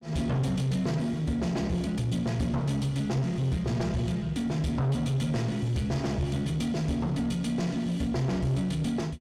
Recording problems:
distorted audio; soft clipping, signal-to-distortion ratio 12 dB

